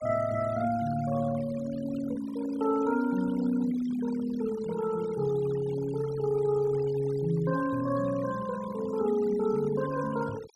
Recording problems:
noise reduction artefacts; signal-to-artefact ratio 16 dB

